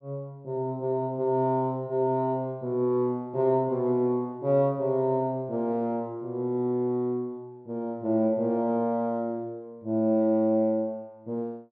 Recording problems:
none

